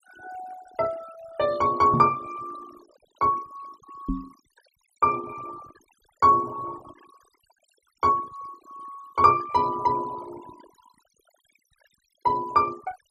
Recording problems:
denoising artefacts; signal-to-artefact ratio 21 dB
microphone thump; at 2 s and at 4 s; peak +1 dB vs average level

